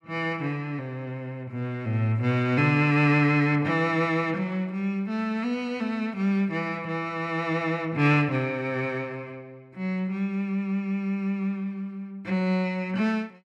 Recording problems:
none

